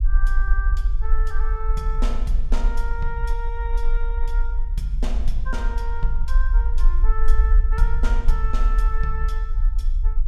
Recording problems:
rumble; below 42 Hz, SNR -9 dB

